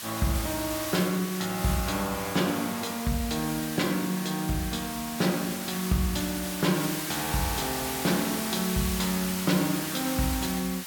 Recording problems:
background hiss; slope +2 dB per octave, SNR 5 dB

